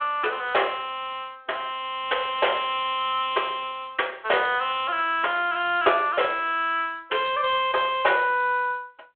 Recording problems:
telephone audio; 370 Hz to 3.4 kHz, G.726

